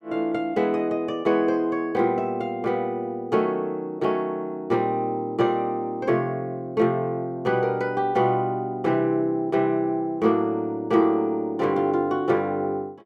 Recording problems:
none

